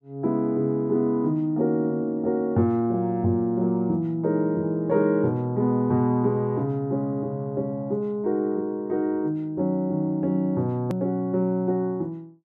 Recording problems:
click at an edit; at 11 s

